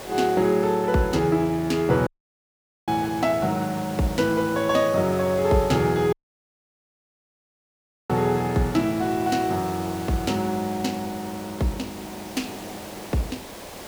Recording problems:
background hiss; SNR 14 dB
audio cutting out; at 2 s for 1 s and at 6 s for 2 s

